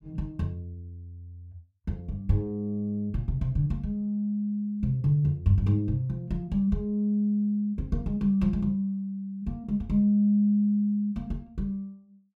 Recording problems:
none

